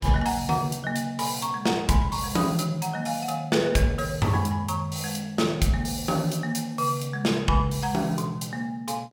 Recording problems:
none

